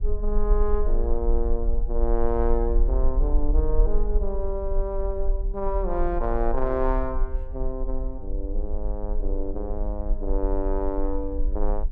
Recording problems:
low-frequency rumble; below 42 Hz, strongest tone 18 Hz, SNR -1 dB

